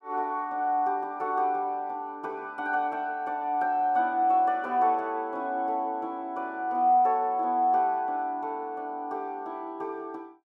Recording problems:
none

